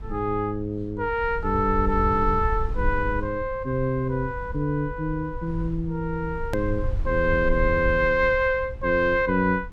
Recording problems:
low-frequency rumble; below 70 Hz, SNR 9 dB
click at an edit; at 6.5 s

